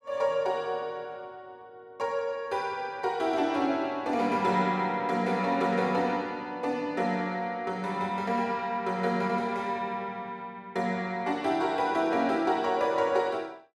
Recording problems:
none

